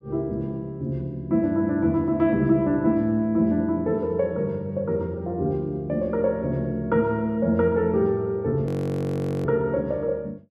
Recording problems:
frozen audio; at 8.5 s for 1 s

